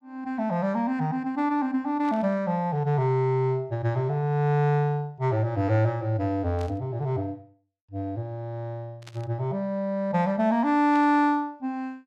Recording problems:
static burst; 4 times, first at 2 s; peak -14 dB vs average level

